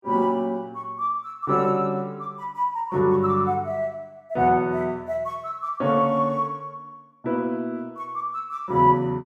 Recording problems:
none

